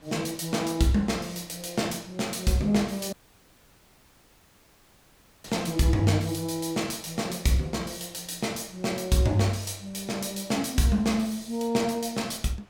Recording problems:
wind on the microphone; below 2.1 kHz, SNR 28 dB
audio cutting out; at 3 s for 2.5 s

